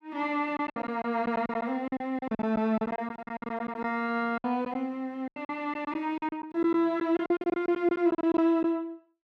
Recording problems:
lost packets; 15% of the sound replaced, filled with silence

